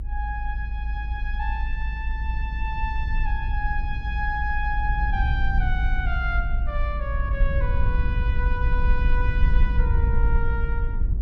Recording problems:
rumble; below 60 Hz, SNR -6 dB

